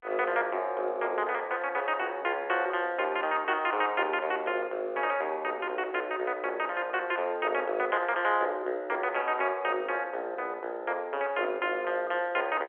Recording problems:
telephone audio; 320 Hz to 3.3 kHz, G.711

